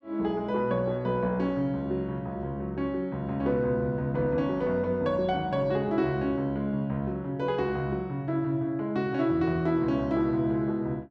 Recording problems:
none

